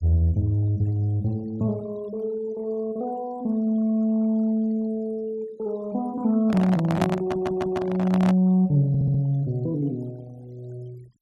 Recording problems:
noise reduction artefacts; signal-to-artefact ratio 26 dB
microphone handling noise; from 6.5 to 8.5 s; peak +2 dB vs average level
stutter; at 7 s and at 9 s

